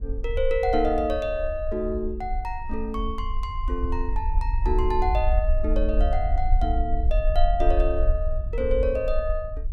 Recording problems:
rumble; below 52 Hz, SNR 1 dB

